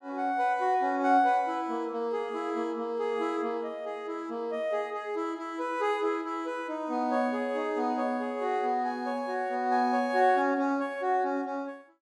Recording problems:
none

